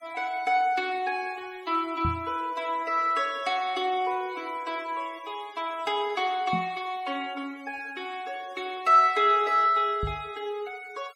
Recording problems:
noise reduction artefacts; signal-to-artefact ratio 24 dB
knock on the microphone; at 2 s, at 6.5 s and at 10 s; peak 0 dB vs average level

